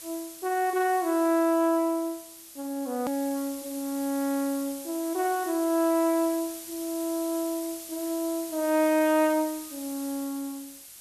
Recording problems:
background hiss; slope +2 dB per octave, SNR 12 dB
click at an edit; at 3 s

